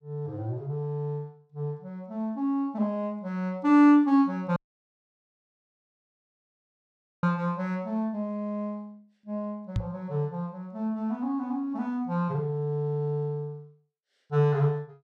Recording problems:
audio cutting out; at 4.5 s for 2.5 s
microphone thump; at 10 s; peak +2 dB vs average level

